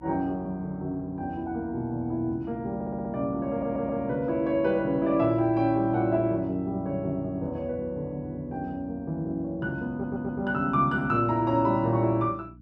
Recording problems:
electrical hum; 60 Hz, harmonics up to 300 Hz, SNR 22 dB
audio stuttering; at 3 s, at 3.5 s and at 10 s

